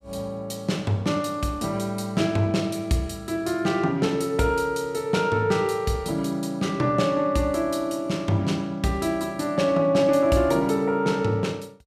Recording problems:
none

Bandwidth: 15 kHz